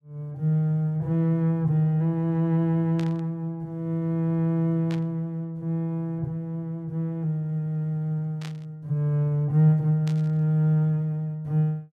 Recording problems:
burst of static; 4 times, first at 3 s; peak -11 dB vs average level

